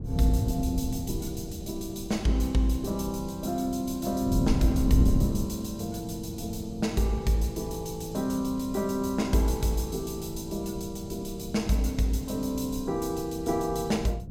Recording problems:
wind noise; below 170 Hz, SNR 6 dB

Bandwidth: 16 kHz